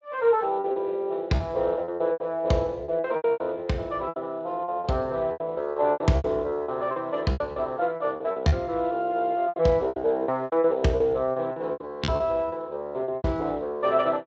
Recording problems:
lossy compression; Speex, log-spectral distance 2 dB
lost packets; 15% of the sound replaced, filled with repeated pitch periods

